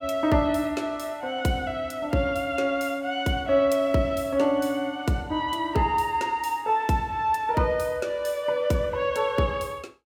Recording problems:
none

